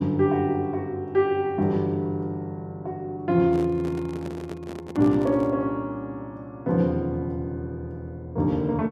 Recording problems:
handling noise; from 3.5 to 5.5 s; peak -8 dB vs average level

